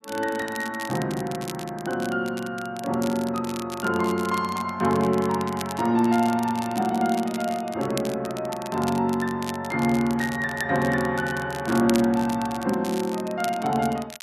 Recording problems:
crackling; vinyl, SNR 15 dB

